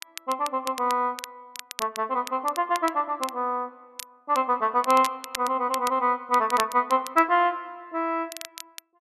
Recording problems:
crackle; vinyl, SNR 14 dB

